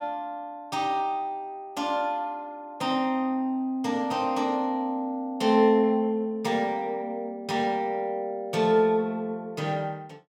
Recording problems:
none

